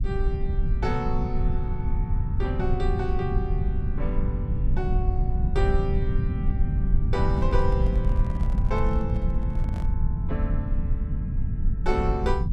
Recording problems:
low-frequency rumble; below 92 Hz, SNR -5 dB
handling noise; from 7 to 10 s; peak -8 dB vs average level

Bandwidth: 12.5 kHz